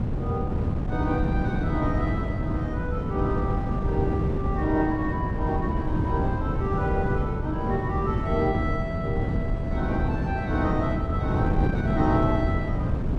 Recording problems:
wind noise; below 220 Hz, SNR -2 dB

